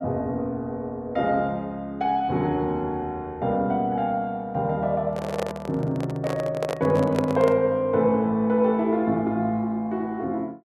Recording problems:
handling noise; from 5 to 7.5 s; peak +2 dB vs average level

